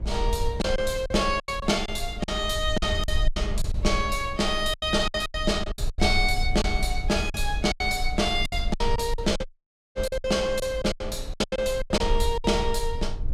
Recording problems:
rumble; below 58 Hz, SNR 7 dB
lost packets; 14% of the sound replaced, filled with silence
dropout; at 9.5 s for 0.5 s

